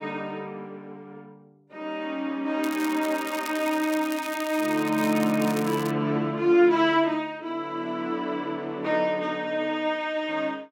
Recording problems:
crackling; from 2.5 to 6 s; loose cable, SNR 14 dB

